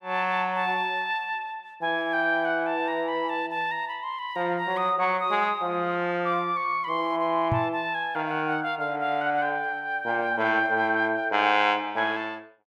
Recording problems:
knock on the microphone; at 7.5 s; peak +2 dB vs average level

